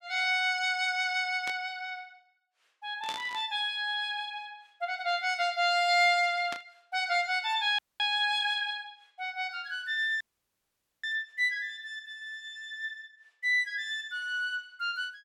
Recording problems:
static burst; at 1.5 s, at 3 s and at 6.5 s; peak -5 dB vs average level
audio cutting out; at 8 s and at 10 s for 1 s

